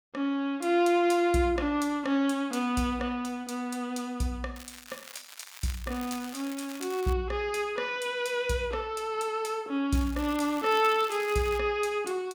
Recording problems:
crackling; from 4.5 to 7 s and from 10 to 12 s; loose cable, SNR 16 dB

